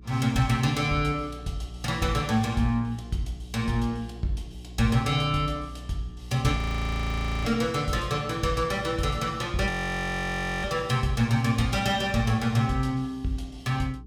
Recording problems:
electrical hum; 60 Hz, harmonics up to 420 Hz, SNR 17 dB
frozen audio; at 6.5 s for 1 s and at 9.5 s for 1 s

